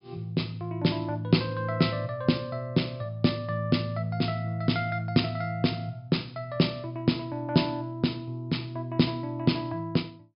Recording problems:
treble cut off; nothing above 5.5 kHz

